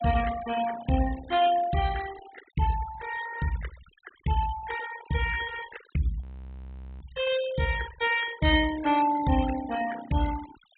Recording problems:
treble cut off; nothing above 4 kHz
denoising artefacts; signal-to-artefact ratio 14 dB
audio freezing; at 6 s for 1 s

